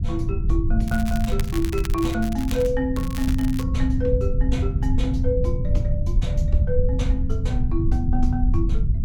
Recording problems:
rumble; below 90 Hz, SNR -2 dB
crackling; from 1 to 2.5 s and at 3 s; loose cable, SNR 12 dB

